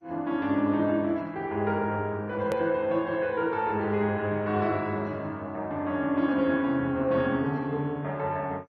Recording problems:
lossy compression; MP3, then MP2, log-spectral distance 2 dB, nothing above 13.1 kHz
hard cut with a click; at 2.5 s

